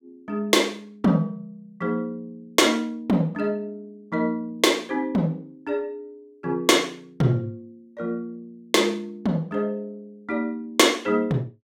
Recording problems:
none

